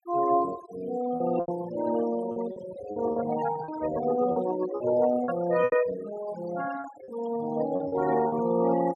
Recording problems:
denoising artefacts; signal-to-artefact ratio 13 dB
packet loss; 8% of the sound replaced, filled with repeated pitch periods

